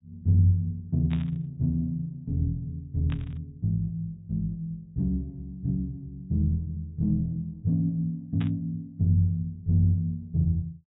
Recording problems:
treble missing; nothing above 4 kHz
static burst; at 1 s, at 3 s and at 8.5 s; peak -10 dB vs average level

